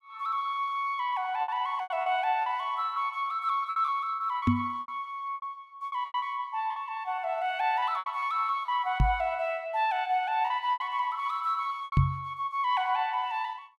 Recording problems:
lost packets; 9% of the sound replaced, filled with repeated pitch periods
microphone thump; at 4.5 s, at 9 s and at 12 s; peak +9 dB vs average level

